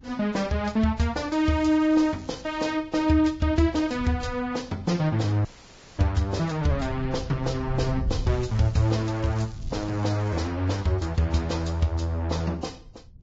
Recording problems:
lossy codec; Vorbis, log-spectral distance 3 dB, nothing above 7.6 kHz
wind on the microphone; below 110 Hz, SNR 11 dB
crackle; from 1.5 to 2.5 s and from 8 to 10 s; loose cable, SNR 25 dB
dropout; at 5.5 s for 0.5 s

